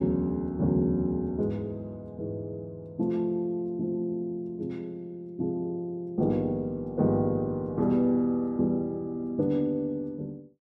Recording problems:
none

